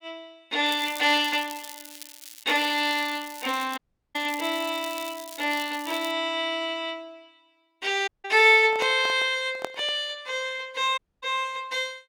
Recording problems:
crackling; from 0.5 to 6 s; loose cable, SNR 16 dB
dropout; at 4 s, at 8 s and at 11 s
microphone handling noise; from 8.5 to 10 s; peak -2 dB vs average level

